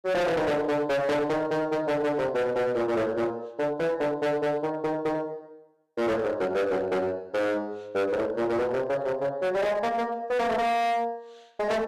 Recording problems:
distortion; hard clipping, uneven, signal-to-distortion ratio 6 dB

